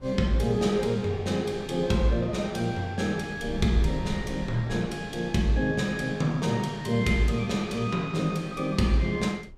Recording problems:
wind noise; below 110 Hz, SNR 18 dB

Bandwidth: 15.5 kHz